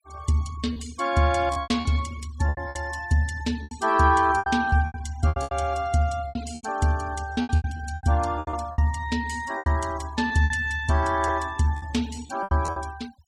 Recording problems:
denoising artefacts; signal-to-artefact ratio 20 dB
packet loss; 14% of the sound replaced, filled with repeated pitch periods

